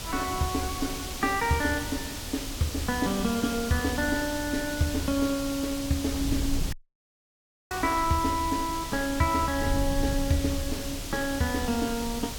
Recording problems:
hiss; SNR 7 dB
wind noise; below 94 Hz, SNR 10 dB
dropout; at 6.5 s for 1 s

